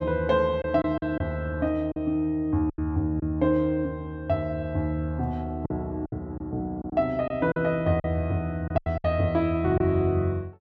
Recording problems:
packet loss; 6% of the sound replaced, filled with silence

